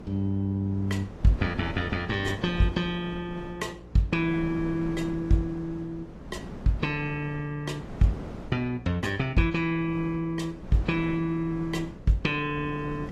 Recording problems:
lossy compression; AAC, log-spectral distance 2 dB, nothing above 13.5 kHz
hum; 60 Hz, harmonics up to 540 Hz, SNR 21 dB
wind noise; below 430 Hz, SNR 13 dB

